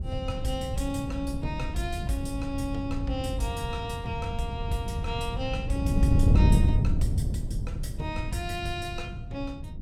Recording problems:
wind noise; below 130 Hz, SNR -4 dB

